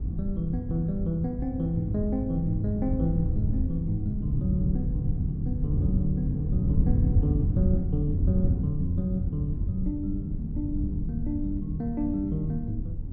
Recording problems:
low-pass filter; nothing above 5.5 kHz
wind noise; below 120 Hz, SNR 0 dB

